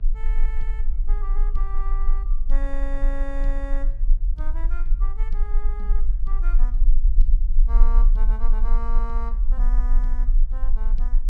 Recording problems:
hum; 50 Hz, harmonics up to 900 Hz, SNR 16 dB
rumble; below 36 Hz, strongest tone 20 Hz, SNR -15 dB

